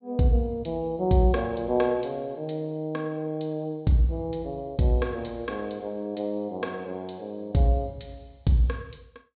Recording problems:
treble cut off; nothing above 4.4 kHz

